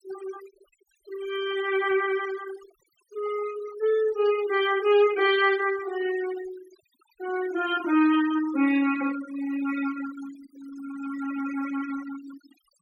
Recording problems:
denoising artefacts; signal-to-artefact ratio 16 dB

